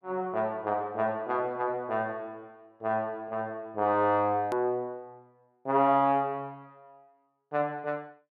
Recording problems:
click at an edit; at 4.5 s

